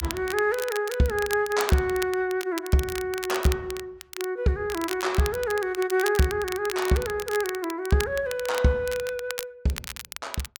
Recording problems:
crackle; vinyl, SNR 11 dB

